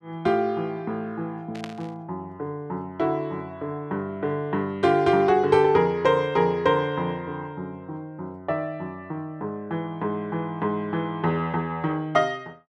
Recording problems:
static burst; at 1.5 s; peak -7 dB vs average level

